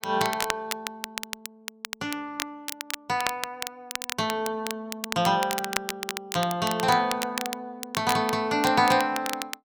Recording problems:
crackling; vinyl, SNR 7 dB

